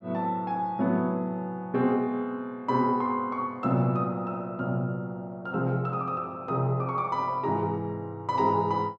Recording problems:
none

